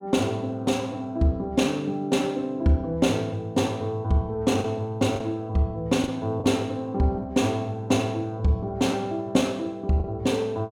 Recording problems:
lost packets; 1.9% of the sound replaced, filled with the last packet

